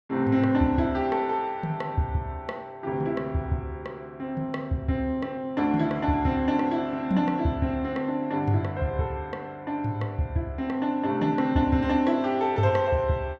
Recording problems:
none

